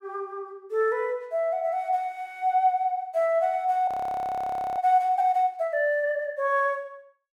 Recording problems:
audio freezing; at 4 s for 1 s

